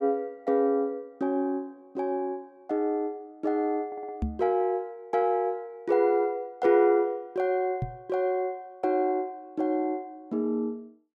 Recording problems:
stutter; at 4 s
microphone bump; at 4 s and at 8 s; peak +1 dB vs average level

